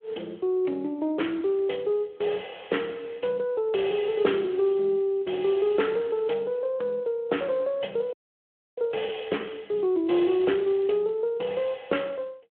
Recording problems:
phone line; 280 Hz to 3.3 kHz, Speex
frozen audio; at 8 s for 0.5 s

